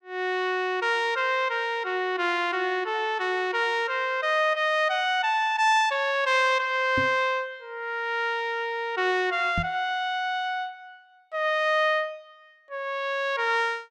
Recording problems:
microphone thump; at 7 s and at 9.5 s; peak -1 dB vs average level

